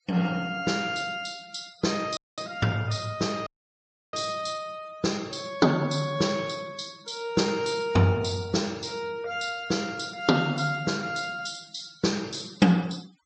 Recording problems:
low-pass filter; nothing above 8 kHz
noise reduction artefacts; signal-to-artefact ratio 23 dB
dropout; at 2 s and at 3.5 s for 0.5 s

